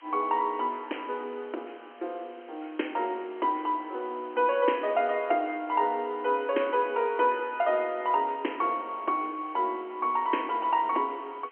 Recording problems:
phone line; 260 Hz to 3.2 kHz, G.711
background hiss; SNR 27 dB

